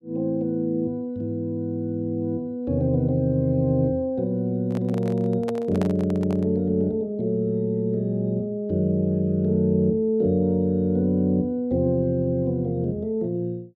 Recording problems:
handling noise; from 4.5 to 6.5 s; peak -4 dB vs average level

